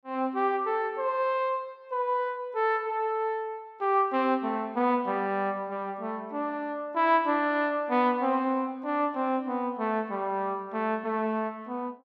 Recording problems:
none

